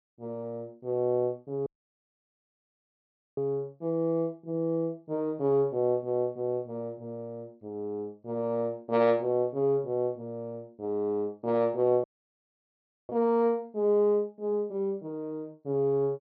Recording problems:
treble missing; nothing above 6.3 kHz
dropout; at 1.5 s for 1.5 s and at 12 s for 1 s

